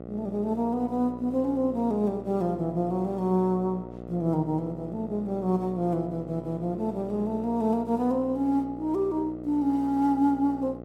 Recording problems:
hum; 60 Hz, harmonics up to 1.4 kHz, SNR 13 dB

